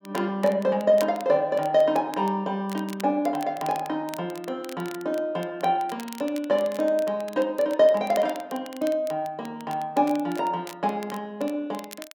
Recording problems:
crackling; vinyl, SNR 20 dB

